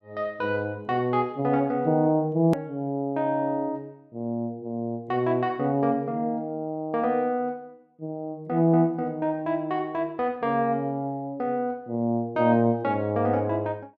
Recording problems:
edit click; at 2.5 s

